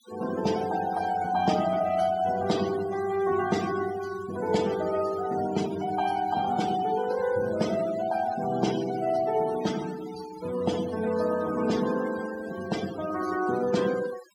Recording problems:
noise reduction artefacts; signal-to-artefact ratio 14 dB

